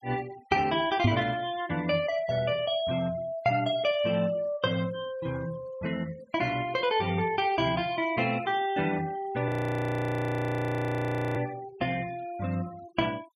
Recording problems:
denoising artefacts; signal-to-artefact ratio 20 dB
microphone bump; at 1 s; peak +8 dB vs average level
audio freezing; at 9.5 s for 2 s

